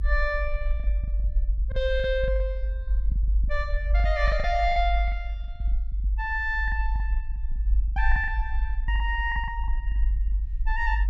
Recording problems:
low-frequency rumble; below 50 Hz, strongest tone 48 Hz, SNR 0 dB
packet loss; 11% of the sound replaced, filled with the last packet

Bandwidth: 14 kHz